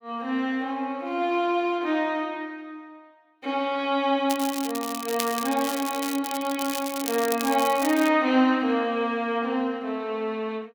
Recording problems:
crackle; from 4.5 to 6 s and from 6 to 8 s; loose cable, SNR 8 dB

